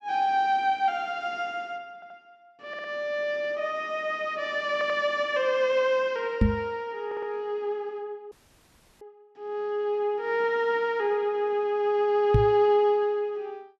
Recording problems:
audio stuttering; 4 times, first at 2 s
microphone bump; at 6.5 s and at 12 s; peak +8 dB vs average level
audio cutting out; at 8.5 s for 0.5 s

